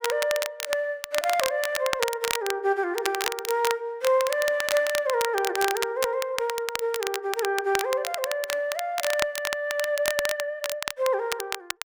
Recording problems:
crackling; vinyl, SNR 5 dB

